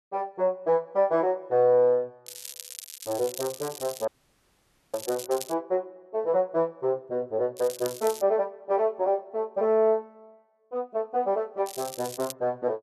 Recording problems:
crackling; from 2.5 to 5.5 s, at 7.5 s and at 12 s; loose cable, SNR 13 dB
audio cutting out; at 4 s for 1 s

